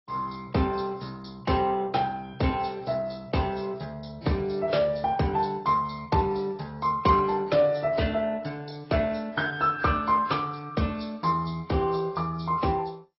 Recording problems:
lossy codec; MP2, then AAC, log-spectral distance 4 dB, nothing above 5.5 kHz

